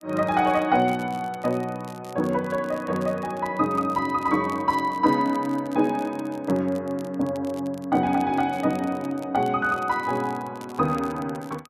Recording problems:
crackling; vinyl, SNR 25 dB

